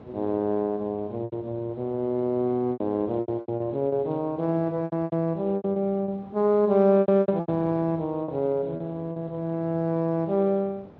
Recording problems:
codec artefacts; Speex, log-spectral distance 2 dB
wind on the microphone; below 540 Hz, SNR 21 dB
lost packets; 10% of the sound replaced, filled with repeated pitch periods

